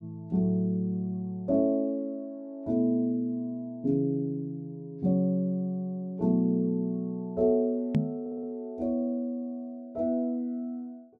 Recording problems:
microphone thump; at 8 s; peak +7 dB vs average level
audio stuttering; at 8 s

